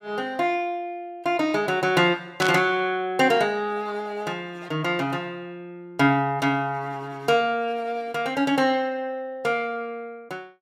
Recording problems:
burst of static; at 2.5 s; peak +1 dB vs average level

